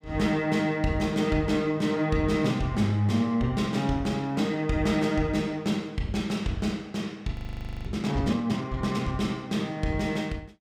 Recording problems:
frozen audio; at 7.5 s for 0.5 s

